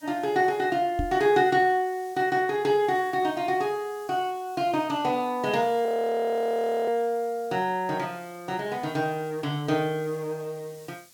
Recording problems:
background hiss; SNR 26 dB
microphone thump; at 1 s; peak 0 dB vs average level
frozen audio; at 6 s for 1 s

